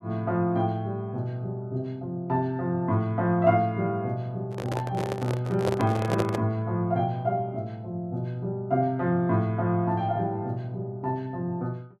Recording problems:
microphone handling noise; from 4.5 to 6.5 s; peak +3 dB vs average level

